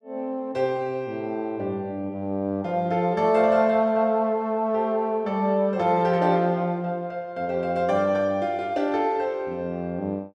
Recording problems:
none

